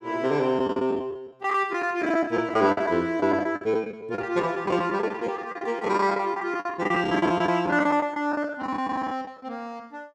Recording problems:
lost packets; 16% of the sound replaced, filled with the last packet

